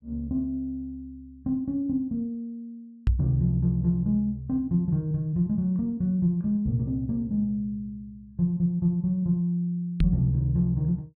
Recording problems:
microphone thump; at 3 s and at 10 s; peak +6 dB vs average level

